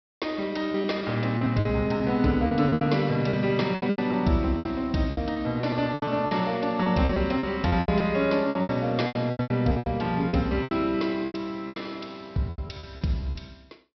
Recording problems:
low-pass filter; nothing above 5.6 kHz
lost packets; 16% of the sound replaced, filled with repeated pitch periods

